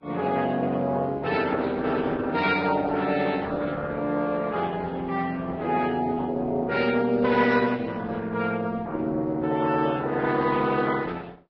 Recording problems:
codec artefacts; Opus, then Vorbis, log-spectral distance 4 dB

